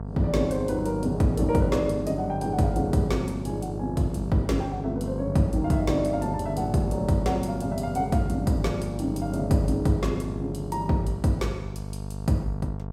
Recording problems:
hum; 50 Hz, harmonics up to 950 Hz, SNR 8 dB

